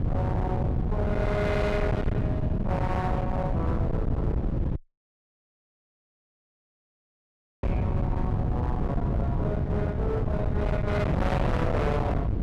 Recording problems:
distorted audio; hard clipping, signal-to-distortion ratio 6 dB
wind on the microphone; below 230 Hz, SNR -3 dB
dropout; at 5 s for 3 s

